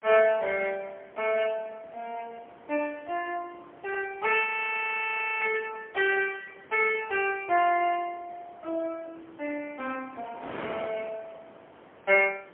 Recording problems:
telephone audio; 260 Hz to 3.2 kHz, AMR-NB, then MP3
wind noise; below 1.4 kHz, SNR 21 dB
frozen audio; at 4.5 s for 1 s

